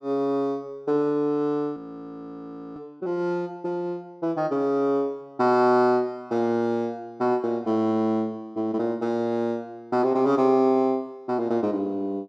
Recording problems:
audio freezing; at 2 s for 1 s

